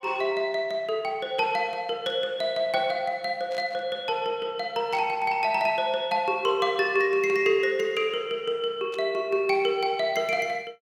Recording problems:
static burst; 4 times, first at 2 s; peak -12 dB vs average level

